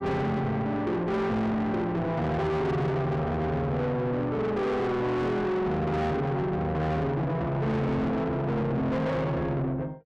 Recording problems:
distorted audio; soft clipping, signal-to-distortion ratio 6 dB

